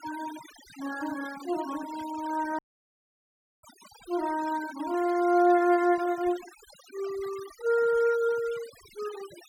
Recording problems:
denoising artefacts; signal-to-artefact ratio 18 dB
audio cutting out; at 2.5 s for 1 s

